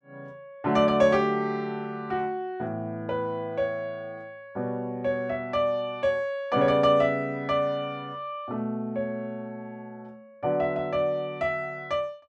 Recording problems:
none

